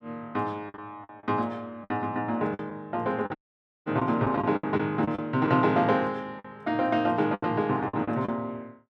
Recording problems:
packet loss; 9% of the sound replaced, filled with the last packet
dropout; at 3.5 s for 0.5 s

